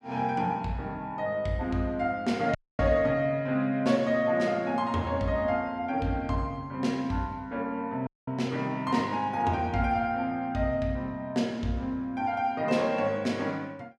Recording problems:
dropout; at 2.5 s and at 8 s

